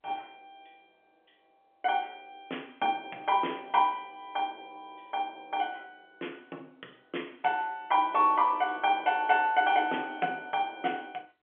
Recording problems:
telephone audio; 260 Hz to 3.3 kHz, G.711

